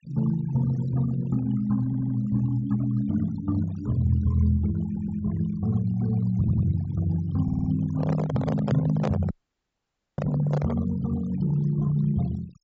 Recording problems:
treble missing; nothing above 8 kHz
noise reduction artefacts; signal-to-artefact ratio 20 dB
audio stuttering; 4 times, first at 2 s
microphone handling noise; from 8 to 11 s; peak 0 dB vs average level
audio cutting out; at 9.5 s for 1 s

